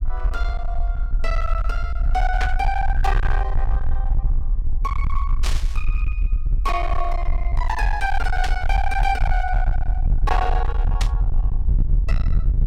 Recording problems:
distortion; hard clipping, uneven, signal-to-distortion ratio 6 dB
rumble; below 52 Hz, SNR -3 dB
static burst; 4 times, first at 2.5 s; peak +3 dB vs average level

